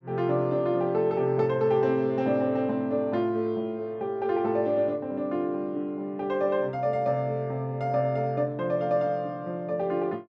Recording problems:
none

